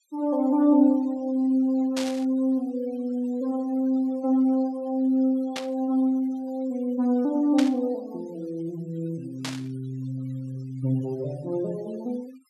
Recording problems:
noise reduction artefacts; signal-to-artefact ratio 28 dB
burst of static; 4 times, first at 2 s; peak -2 dB vs average level

